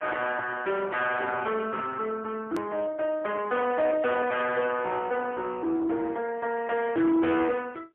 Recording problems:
phone line; 260 Hz to 2.7 kHz, AMR-NB, then MP3
distorted audio; soft clipping, signal-to-distortion ratio 11 dB
edit click; at 2.5 s

